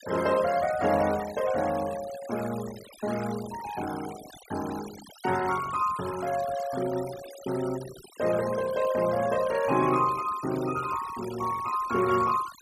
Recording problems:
denoising artefacts; signal-to-artefact ratio 15 dB

